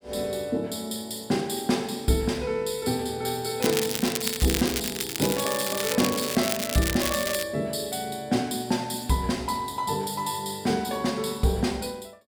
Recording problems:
crackling; from 3.5 to 7.5 s; loose cable, SNR 2 dB

